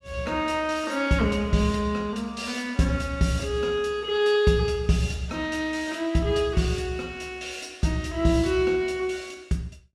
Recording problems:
none

